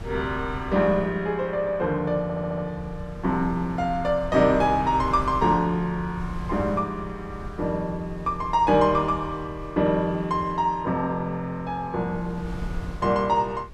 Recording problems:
wind on the microphone; below 120 Hz, SNR 15 dB
stutter; at 2 s

